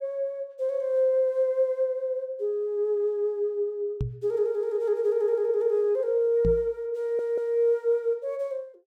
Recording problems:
microphone thump; at 4 s and at 6.5 s; peak +1 dB vs average level
stutter; at 7 s

